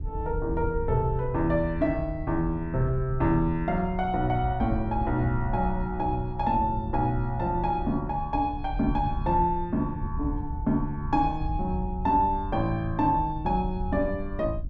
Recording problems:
wind noise; below 86 Hz, SNR 8 dB

